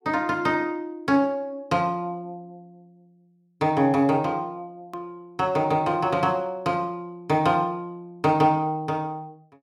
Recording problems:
hard cut with a click; at 5 s

